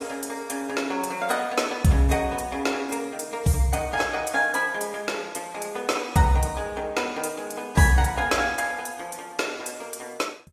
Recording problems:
codec artefacts; AAC, log-spectral distance 4 dB

